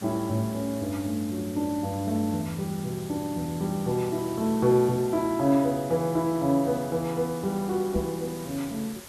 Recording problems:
background hiss; slope -2 dB per octave, SNR 16 dB
microphone thump; at 8 s; peak +1 dB vs average level

